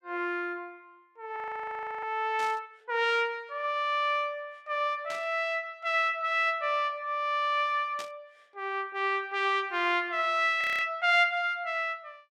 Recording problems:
audio freezing; at 1.5 s for 0.5 s and at 11 s
static burst; at 2.5 s, at 5 s and at 8 s; peak -8 dB vs average level

